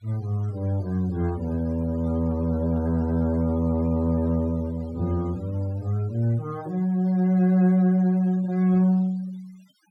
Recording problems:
noise reduction artefacts; signal-to-artefact ratio 26 dB

